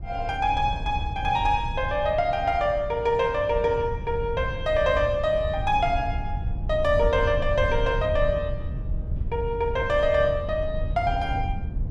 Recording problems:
wind on the microphone; below 98 Hz, SNR 7 dB

